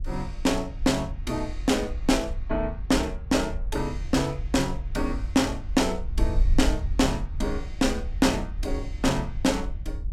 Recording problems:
wind on the microphone; below 60 Hz, SNR 7 dB

